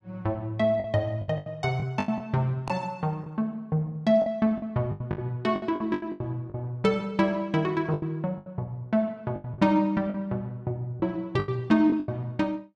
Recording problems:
lost packets; 11% of the sound replaced, filled with the last packet

